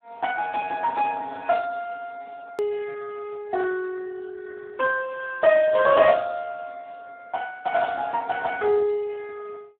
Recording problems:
phone line; 110 Hz to 3.1 kHz, Speex
edit click; at 2.5 s

